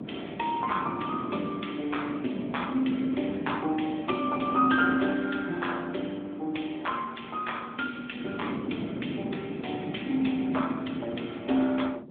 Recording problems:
telephone audio; 190 Hz to 3.5 kHz, AMR-NB
wind noise; below 360 Hz, SNR 8 dB

